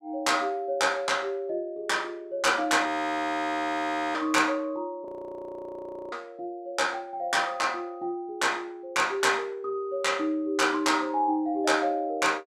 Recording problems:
frozen audio; at 3 s for 1.5 s and at 5 s for 1 s

